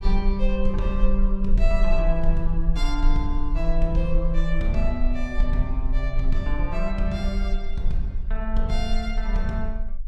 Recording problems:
rumble; below 36 Hz, strongest tone 20 Hz, SNR 0 dB

